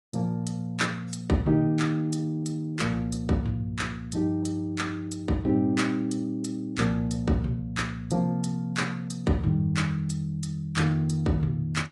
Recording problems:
codec artefacts; AAC, log-spectral distance 2 dB, nothing above 10.7 kHz

